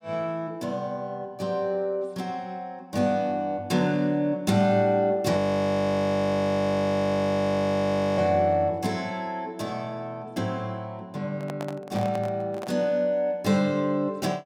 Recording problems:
audio freezing; at 5.5 s for 3 s
handling noise; from 11 to 13 s; peak -6 dB vs average level

